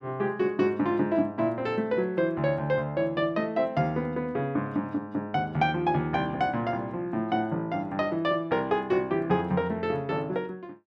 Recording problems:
none

